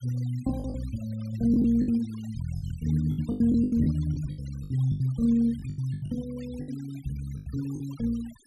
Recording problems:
noise reduction artefacts; signal-to-artefact ratio 24 dB
lost packets; 13% of the sound replaced, filled with the last packet

